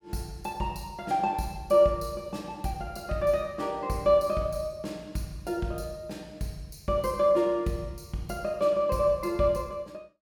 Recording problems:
none

